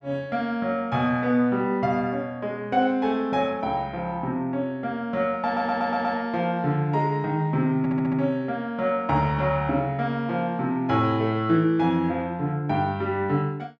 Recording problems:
stutter; at 5.5 s and at 8 s

